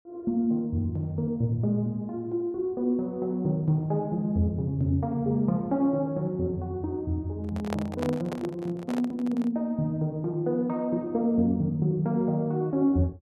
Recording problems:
handling noise; from 7.5 to 9.5 s; peak -1 dB vs average level

